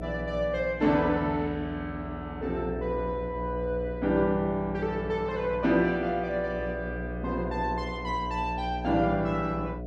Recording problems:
hum; 60 Hz, harmonics up to 720 Hz, SNR 9 dB

